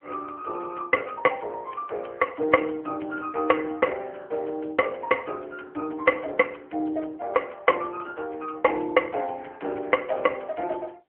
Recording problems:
phone line; 280 Hz to 2.6 kHz, AMR-NB

